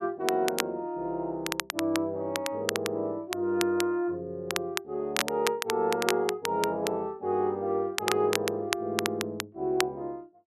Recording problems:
crackle; vinyl, SNR 4 dB

